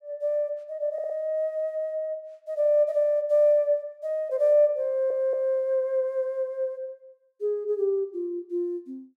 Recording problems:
stutter; at 1 s and at 5 s

